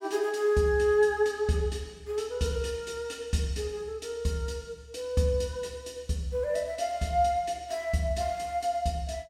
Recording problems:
none

